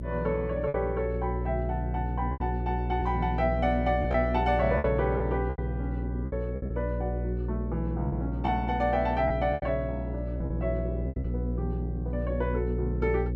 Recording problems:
mains hum; 60 Hz, harmonics up to 540 Hz, SNR 2 dB
lost packets; 6% of the sound replaced, filled with repeated pitch periods

